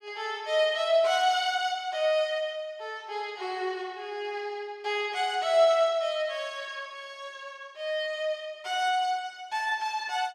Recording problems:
none

